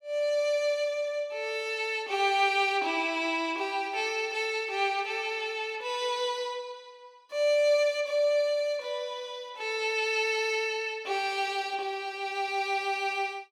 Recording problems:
none

